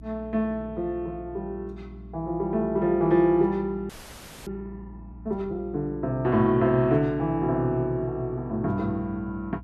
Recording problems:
hum; 60 Hz, harmonics up to 300 Hz, SNR 18 dB
frozen audio; at 4 s for 0.5 s

